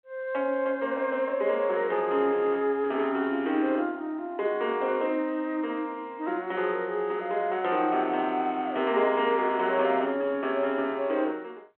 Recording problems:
telephone audio; 260 Hz to 3.5 kHz, G.726

